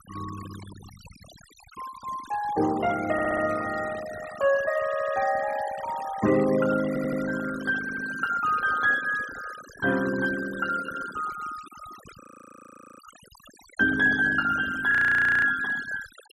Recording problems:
denoising artefacts; signal-to-artefact ratio 16 dB
audio stuttering; 4 times, first at 3 s
audio freezing; at 12 s for 1 s and at 15 s for 0.5 s

